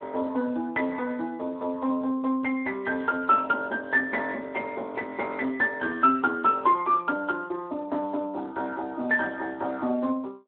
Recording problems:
telephone audio; 220 Hz to 3.6 kHz, Speex

